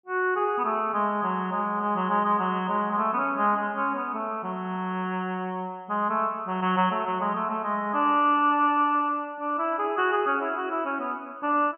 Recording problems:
treble missing; nothing above 3.1 kHz

